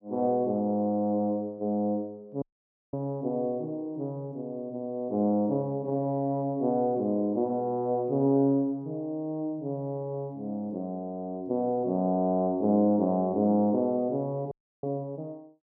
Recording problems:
dropout; at 2.5 s for 0.5 s and at 15 s

